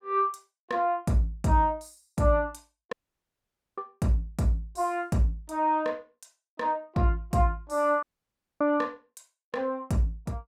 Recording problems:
dropout; at 3 s for 1 s and at 8 s for 0.5 s

